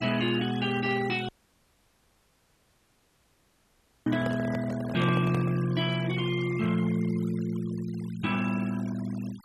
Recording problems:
noise reduction artefacts; signal-to-artefact ratio 18 dB
audio cutting out; at 1.5 s for 3 s
microphone handling noise; from 4 to 5.5 s; peak -3 dB vs average level

